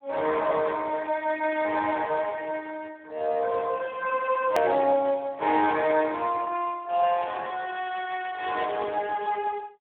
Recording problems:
telephone audio; 320 Hz to 3.4 kHz, Speex
edit click; at 4.5 s

